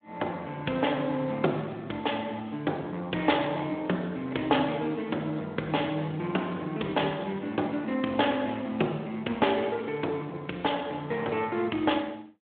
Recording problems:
telephone audio; 240 Hz to 3.5 kHz, Speex

